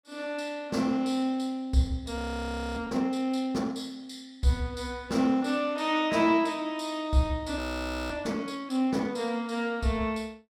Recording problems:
frozen audio; at 2 s for 0.5 s and at 7.5 s for 0.5 s

